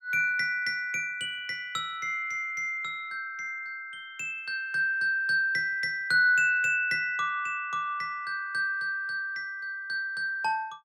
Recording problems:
none

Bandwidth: 16.5 kHz